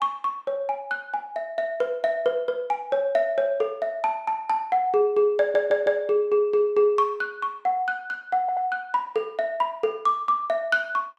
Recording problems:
stutter; at 5.5 s and at 8.5 s

